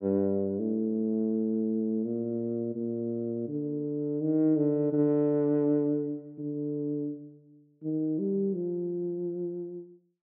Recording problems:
none

